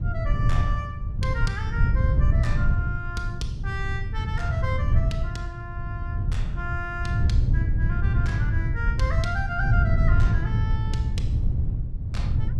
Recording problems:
wind noise; below 110 Hz, SNR -8 dB

